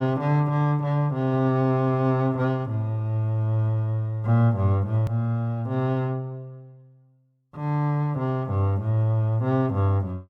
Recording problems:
hard cut with a click; at 5 s

